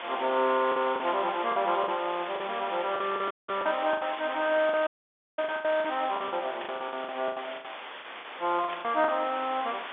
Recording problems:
phone line; 240 Hz to 3.7 kHz, G.711
background hiss; SNR 10 dB
lost packets; 14% of the sound replaced, filled with the last packet
static burst; at 1 s, at 6.5 s and at 8.5 s; peak -7 dB vs average level
dropout; at 3.5 s and at 5 s for 0.5 s

